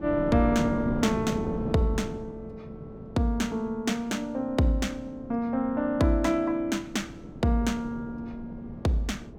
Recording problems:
wind noise; below 360 Hz, SNR 11 dB

